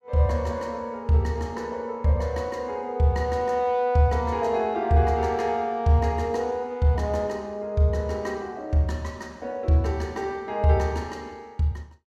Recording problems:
none

